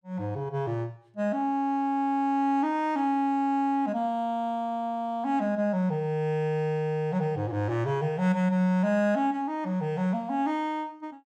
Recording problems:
none

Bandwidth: 15 kHz